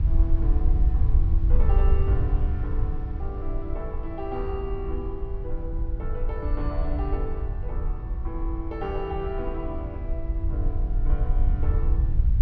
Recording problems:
low-pass filter; nothing above 6.1 kHz
low-frequency rumble; below 68 Hz, SNR -8 dB
wind noise; below 230 Hz, SNR 13 dB

